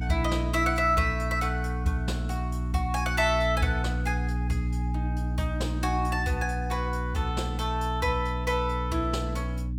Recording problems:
mains hum; 60 Hz, harmonics up to 300 Hz, SNR 2 dB

